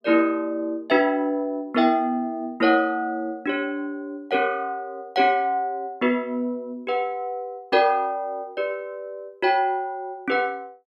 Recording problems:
none

